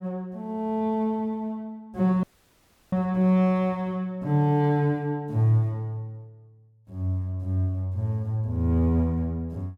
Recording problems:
dropout; at 2 s for 0.5 s

